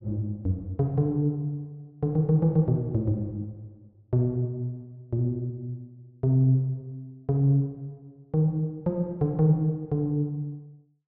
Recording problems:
treble cut off; nothing above 5.6 kHz

